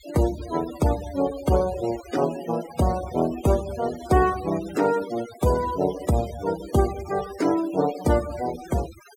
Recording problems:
denoising artefacts; signal-to-artefact ratio 15 dB

